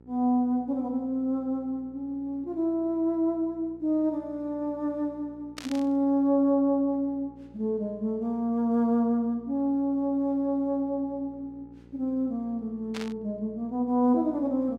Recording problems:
electrical hum; 60 Hz, harmonics up to 960 Hz, SNR 25 dB
burst of static; at 5.5 s and at 13 s; peak -6 dB vs average level

